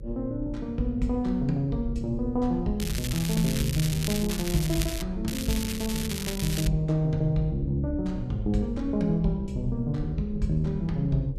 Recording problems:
hum; 50 Hz, harmonics up to 550 Hz, SNR 17 dB
rumble; below 70 Hz, strongest tone 38 Hz, SNR 12 dB
crackle; from 3 to 5 s and from 5.5 to 6.5 s; loose cable, SNR 6 dB

